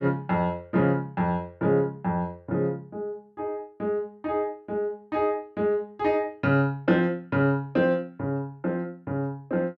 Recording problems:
none

